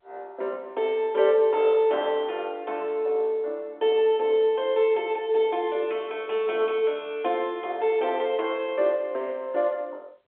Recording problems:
phone line; 340 Hz to 3.5 kHz, G.711

